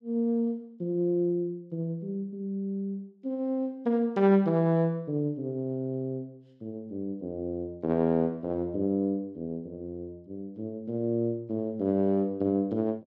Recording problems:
none

